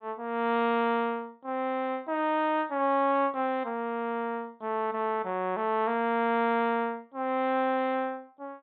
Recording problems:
treble missing; nothing above 4 kHz

